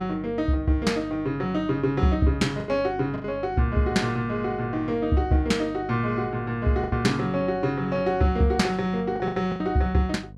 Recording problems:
hum; 50 Hz, harmonics up to 550 Hz, SNR 18 dB
lost packets; 4% of the sound replaced, filled with the last packet

